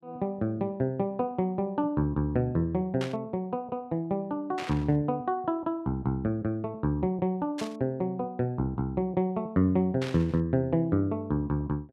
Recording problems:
static burst; 4 times, first at 3 s; peak -5 dB vs average level

